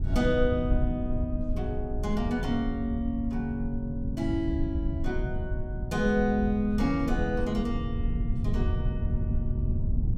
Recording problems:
low-frequency rumble; below 100 Hz, SNR 2 dB

